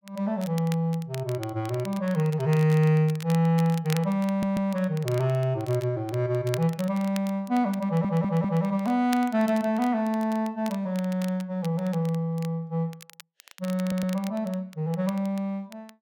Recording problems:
crackling; vinyl, SNR 19 dB
stutter; at 4.5 s, at 8 s and at 14 s

